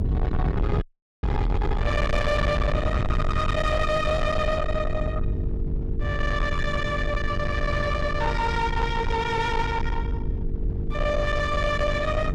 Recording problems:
distorted audio; soft clipping, signal-to-distortion ratio 6 dB
hum; 50 Hz, harmonics up to 450 Hz, SNR 12 dB
rumble; below 170 Hz, SNR 2 dB
wind on the microphone; below 220 Hz, SNR 14 dB
audio freezing; at 1 s

